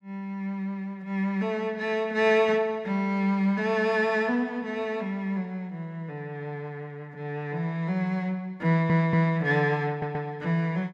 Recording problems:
audio stuttering; at 8.5 s and at 10 s

